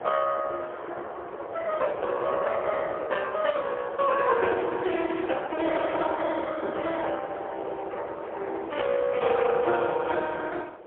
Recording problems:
phone line; 300 Hz to 3.4 kHz, AMR-NB, then MP3
wind noise; below 850 Hz, SNR 10 dB

